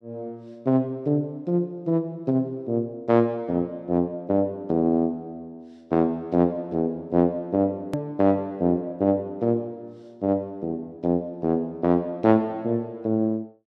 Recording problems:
click at an edit; at 8 s

